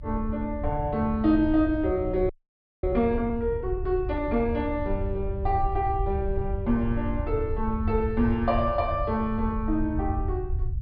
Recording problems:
low-pass filter; nothing above 5.5 kHz
rumble; below 86 Hz, SNR 6 dB
frozen audio; at 2.5 s for 0.5 s

